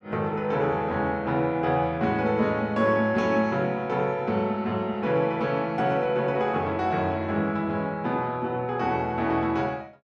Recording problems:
none

